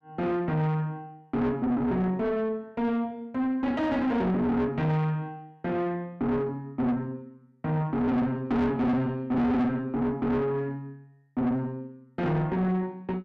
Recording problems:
distorted audio; soft clipping, signal-to-distortion ratio 6 dB

